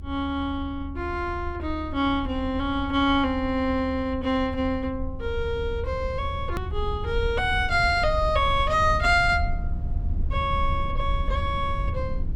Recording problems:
low-frequency rumble; below 78 Hz, SNR 7 dB
edit click; at 6.5 s

